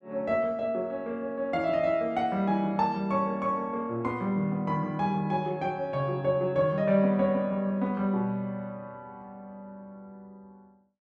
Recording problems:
none

